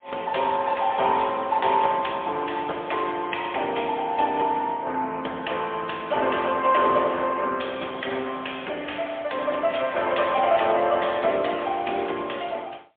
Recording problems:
telephone audio; 300 Hz to 3.4 kHz, AMR-NB, then MP3

